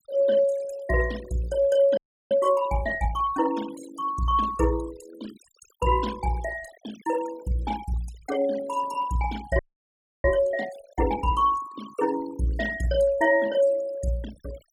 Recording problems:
noise reduction artefacts; signal-to-artefact ratio 17 dB
frozen audio; at 2 s and at 9.5 s for 0.5 s

